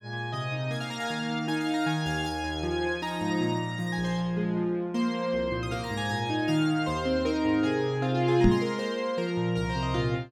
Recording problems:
microphone bump; at 8.5 s; peak +8 dB vs average level

